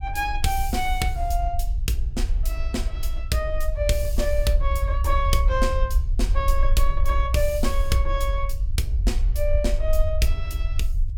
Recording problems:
rumble; below 58 Hz, SNR -1 dB

